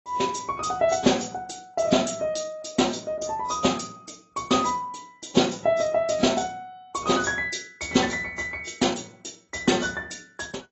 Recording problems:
codec artefacts; AAC, log-spectral distance 6 dB, nothing above 7.6 kHz

